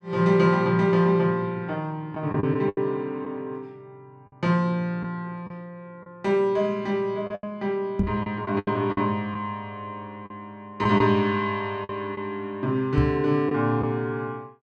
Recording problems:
packet loss; 5% of the sound replaced, filled with the last packet
knock on the microphone; at 8 s and at 13 s; peak +7 dB vs average level

